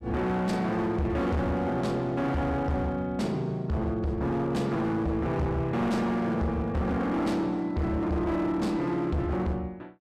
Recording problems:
distorted audio; hard clipping, signal-to-distortion ratio 8 dB

